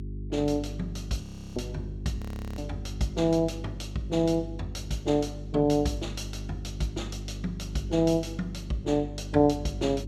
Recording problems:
mains hum; 50 Hz, harmonics up to 400 Hz, SNR 9 dB
audio freezing; at 1 s and at 2 s

